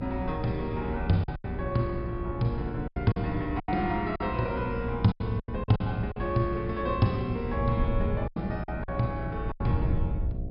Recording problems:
treble missing; nothing above 5.5 kHz
hum; 60 Hz, harmonics up to 720 Hz, SNR 8 dB
wind noise; below 110 Hz, SNR 7 dB
lost packets; 9% of the sound replaced, filled with silence

